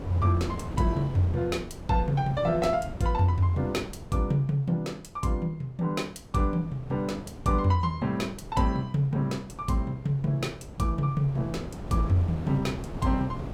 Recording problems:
wind on the microphone; below 390 Hz, SNR 12 dB

